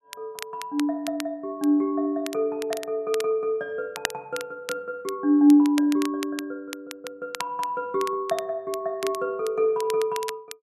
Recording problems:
crackling; vinyl, SNR 14 dB

